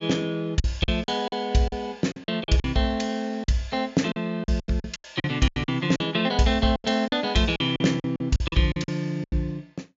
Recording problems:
low-pass filter; nothing above 7.1 kHz
packet loss; 14% of the sound replaced, filled with silence

